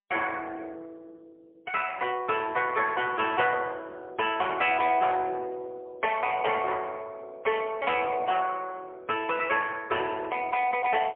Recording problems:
telephone audio; 390 Hz to 3.4 kHz, AMR-NB, then MP3

